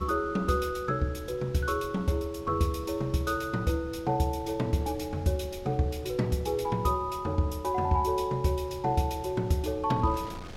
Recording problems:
wind on the microphone; below 550 Hz, SNR 20 dB

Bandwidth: 16.5 kHz